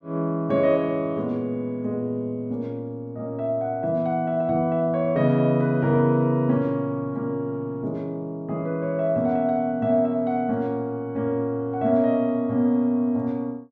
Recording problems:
none

